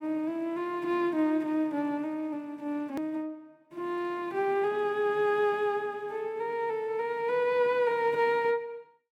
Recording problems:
click at an edit; at 3 s

